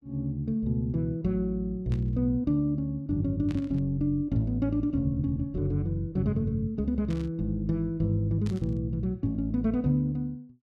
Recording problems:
burst of static; 4 times, first at 2 s; peak -13 dB vs average level

